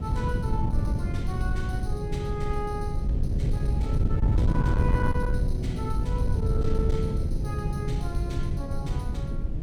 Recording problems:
distortion; soft clipping, signal-to-distortion ratio 13 dB
wind noise; below 120 Hz, SNR -5 dB

